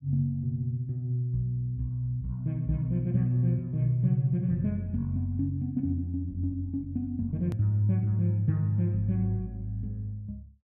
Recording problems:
edit click; at 7.5 s

